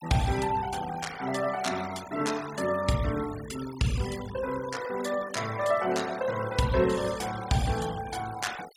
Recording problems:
denoising artefacts; signal-to-artefact ratio 14 dB

